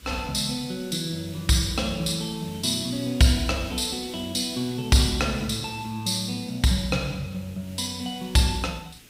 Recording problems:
hiss; SNR 21 dB

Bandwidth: 15.5 kHz